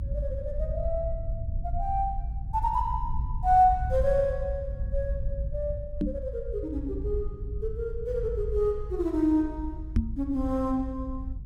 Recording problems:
low-frequency rumble; below 70 Hz, SNR 6 dB
microphone bump; at 6 s and at 10 s; peak +7 dB vs average level

